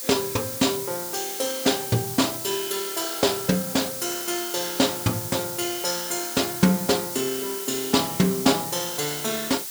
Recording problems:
background hiss; SNR 5 dB

